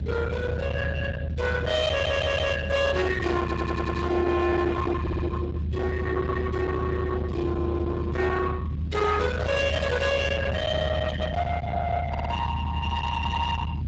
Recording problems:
codec artefacts; Speex, log-spectral distance 3 dB, nothing above 7.3 kHz
distortion; soft clipping, signal-to-distortion ratio 7 dB
rumble; below 580 Hz, strongest tone 76 Hz, SNR 4 dB
audio stuttering; 4 times, first at 2 s

